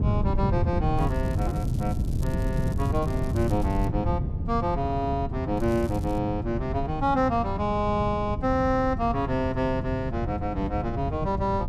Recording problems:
wind noise; below 150 Hz, SNR 2 dB
crackling; from 1 to 4 s and at 5.5 s; loose cable, SNR 23 dB

